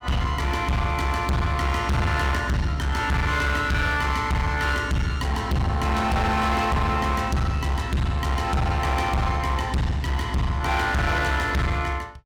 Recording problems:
distorted audio; hard clipping, uneven, signal-to-distortion ratio 6 dB

